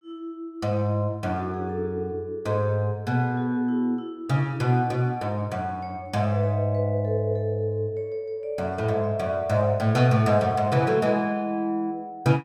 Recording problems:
none

